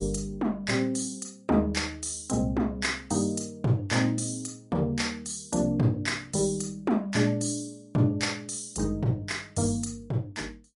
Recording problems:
lossy codec; MP3, log-spectral distance 4 dB, nothing above 10.7 kHz

